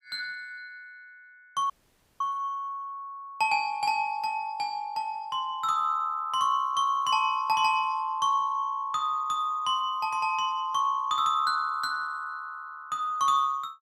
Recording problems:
dropout; at 1.5 s for 0.5 s

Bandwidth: 15.5 kHz